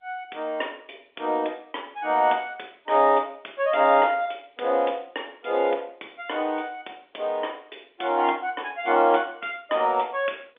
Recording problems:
phone line; 280 Hz to 3.6 kHz, G.711

